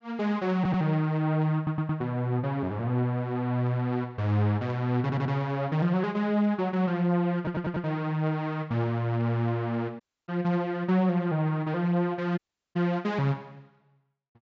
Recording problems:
low-pass filter; nothing above 8 kHz
audio stuttering; 4 times, first at 0.5 s
dropout; at 10 s and at 12 s

